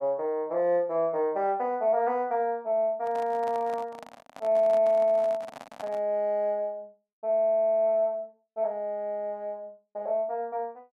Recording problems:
microphone handling noise; from 3 to 6 s; peak -8 dB vs average level

